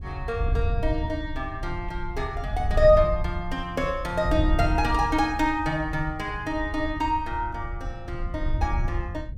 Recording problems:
wind noise; below 80 Hz, SNR 5 dB

